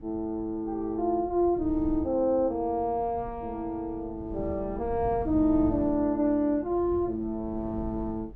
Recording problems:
wind noise; below 150 Hz, SNR 15 dB

